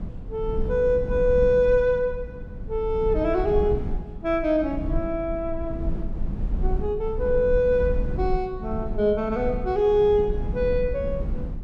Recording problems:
low-frequency rumble; below 90 Hz, SNR 8 dB

